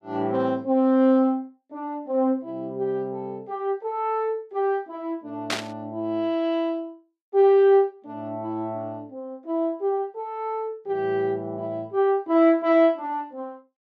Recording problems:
burst of static; at 5.5 s; peak +2 dB vs average level

